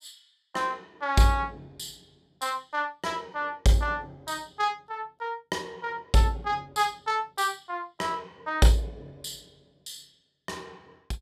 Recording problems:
none

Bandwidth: 14.5 kHz